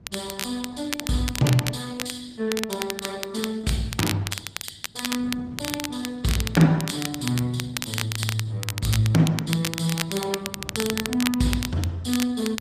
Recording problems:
lossy compression; Opus, log-spectral distance 3 dB, nothing above 14.7 kHz
wind noise; below 200 Hz, SNR 19 dB
crackle; vinyl, SNR 6 dB

